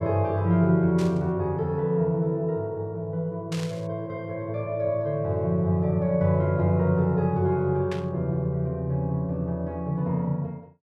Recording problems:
burst of static; at 1 s, at 3.5 s and at 8 s; peak -8 dB vs average level

